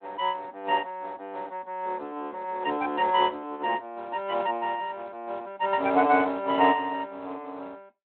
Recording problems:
phone line; 240 Hz to 3.7 kHz, Speex

